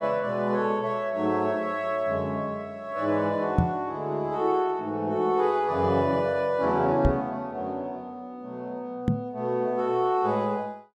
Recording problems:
microphone thump; at 3.5 s, at 7 s and at 9 s; peak +8 dB vs average level

